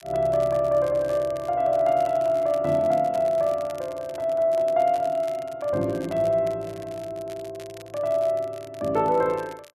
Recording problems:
crackle; vinyl, SNR 25 dB

